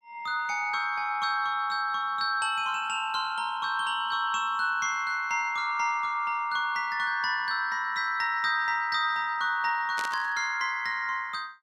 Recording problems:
burst of static; at 10 s; peak -4 dB vs average level

